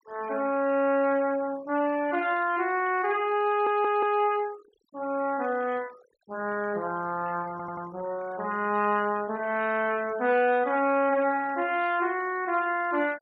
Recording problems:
denoising artefacts; signal-to-artefact ratio 21 dB
stutter; at 3.5 s and at 7.5 s

